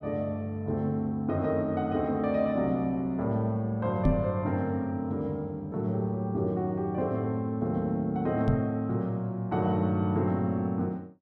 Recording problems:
microphone thump; at 4 s and at 8.5 s; peak +7 dB vs average level

